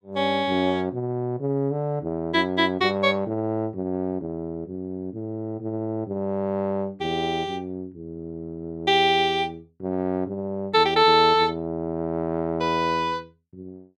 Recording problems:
none

